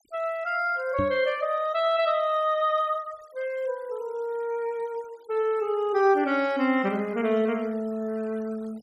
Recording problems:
denoising artefacts; signal-to-artefact ratio 27 dB
knock on the microphone; at 1 s; peak 0 dB vs average level

